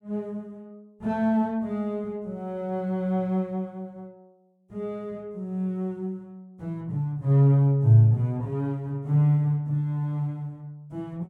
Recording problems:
none

